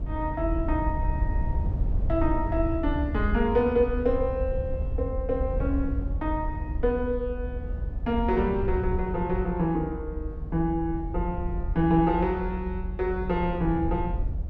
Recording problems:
low-frequency rumble; below 80 Hz, SNR 4 dB

